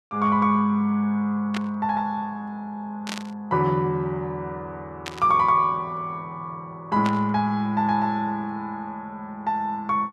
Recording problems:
burst of static; 4 times, first at 1.5 s; peak -3 dB vs average level

